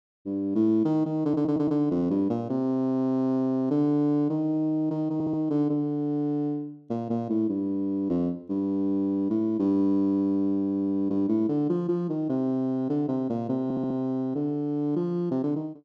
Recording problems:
stutter; at 1 s, at 5 s and at 14 s

